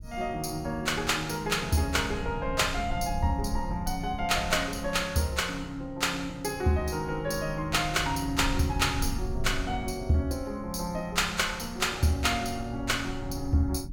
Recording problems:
rumble; below 96 Hz, SNR 11 dB

